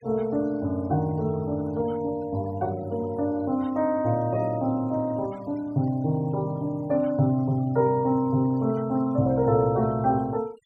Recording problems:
noise reduction artefacts; signal-to-artefact ratio 27 dB

